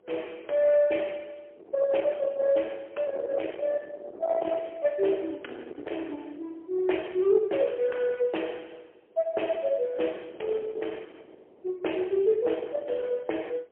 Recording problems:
phone line; 320 Hz to 3.3 kHz, AMR-NB, then MP3
distortion; soft clipping, signal-to-distortion ratio 15 dB
wind noise; below 660 Hz, SNR 13 dB

